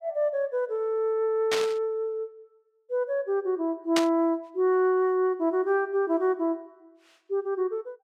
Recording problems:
static burst; at 1.5 s and at 4 s; peak +3 dB vs average level

